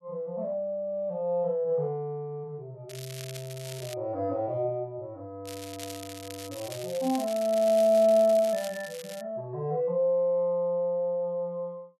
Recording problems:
crackle; from 3 to 4 s and from 5.5 to 9 s; loose cable, SNR 15 dB

